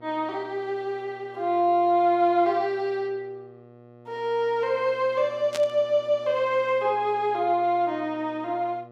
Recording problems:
mains hum; 60 Hz, harmonics up to 1.4 kHz, SNR 24 dB
burst of static; at 5.5 s; peak -4 dB vs average level

